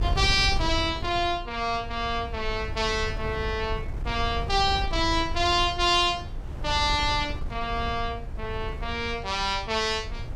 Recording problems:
wind noise; below 98 Hz, SNR 9 dB

